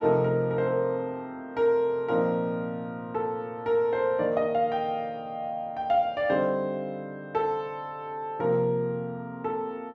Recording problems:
none

